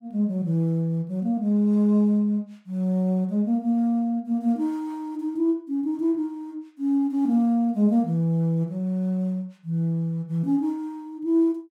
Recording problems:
none

